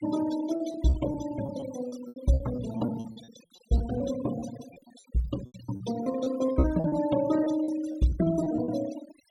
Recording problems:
denoising artefacts; signal-to-artefact ratio 13 dB
packet loss; 15% of the sound replaced, filled with repeated pitch periods

